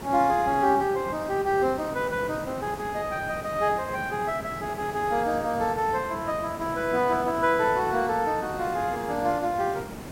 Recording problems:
background hiss; slope -6 dB per octave, SNR 12 dB

